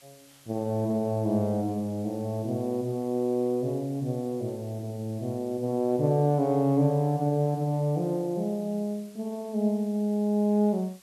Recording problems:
background hiss; slope +1 dB per octave, SNR 26 dB

